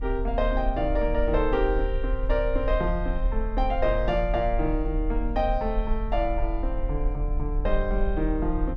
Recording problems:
rumble; below 42 Hz, strongest tone 38 Hz, SNR 3 dB

